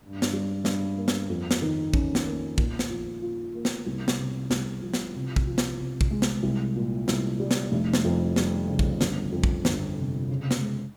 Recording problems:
background hiss; slope -6 dB per octave, SNR 26 dB

